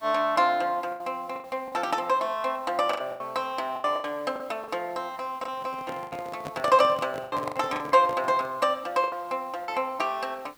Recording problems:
background hiss; SNR 28 dB
lost packets; 10% of the sound replaced, filled with the last packet
microphone handling noise; from 5.5 to 8.5 s; peak -6 dB vs average level

